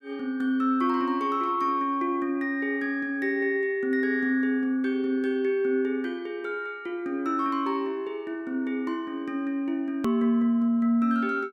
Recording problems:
click at an edit; at 10 s

